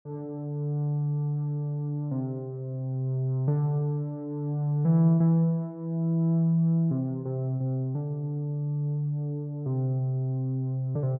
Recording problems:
none

